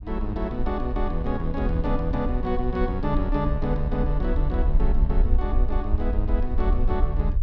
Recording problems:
low-frequency rumble; below 56 Hz, SNR -1 dB

